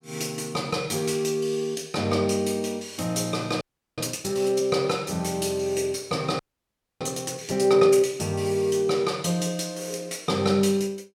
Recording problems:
audio freezing; at 3.5 s and at 6.5 s for 0.5 s

